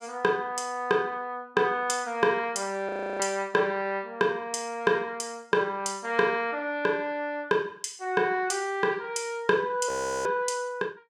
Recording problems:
frozen audio; at 3 s and at 10 s

